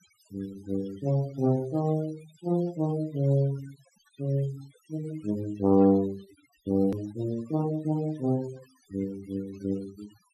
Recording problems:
noise reduction artefacts; signal-to-artefact ratio 22 dB
click at an edit; at 7 s

